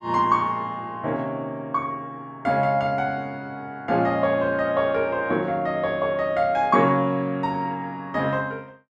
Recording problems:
none

